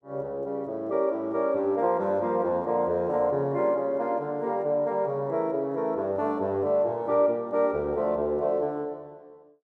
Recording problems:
none

